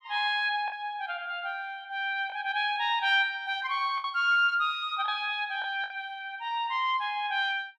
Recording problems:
packet loss; 3% of the sound replaced, filled with the last packet

